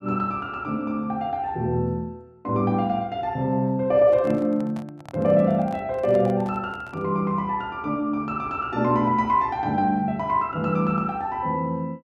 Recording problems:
microphone handling noise; from 4 to 7 s; peak -11 dB vs average level

